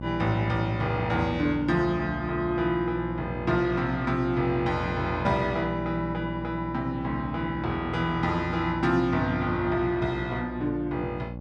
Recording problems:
electrical hum; 60 Hz, harmonics up to 1.1 kHz, SNR 9 dB

